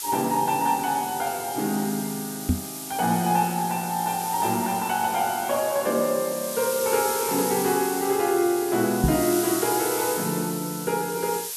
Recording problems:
background hiss; slope +4 dB per octave, SNR 7 dB
microphone bump; at 2.5 s and at 9 s; peak +6 dB vs average level

